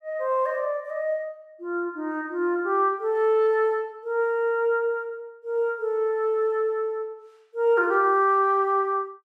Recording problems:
none

